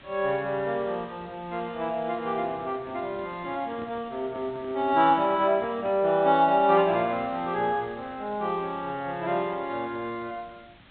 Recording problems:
treble missing; nothing above 4 kHz
hiss; SNR 25 dB
handling noise; from 2.5 to 6 s; peak -10 dB vs average level

